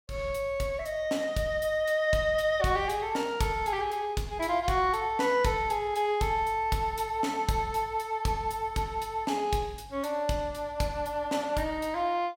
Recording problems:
none

